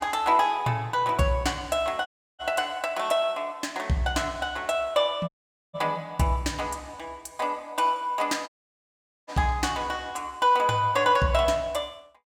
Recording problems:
audio cutting out; at 2 s, at 5.5 s and at 8.5 s for 1 s

